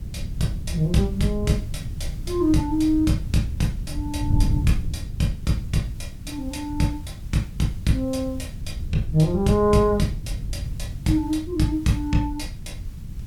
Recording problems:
hiss; slope -1 dB per octave, SNR 29 dB
wind on the microphone; below 120 Hz, SNR 8 dB

